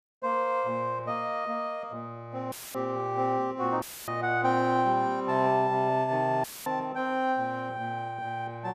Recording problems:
audio cutting out; at 2.5 s, at 4 s and at 6.5 s; filled with static

